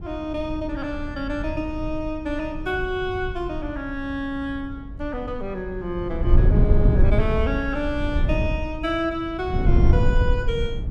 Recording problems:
wind on the microphone; below 100 Hz, SNR -3 dB

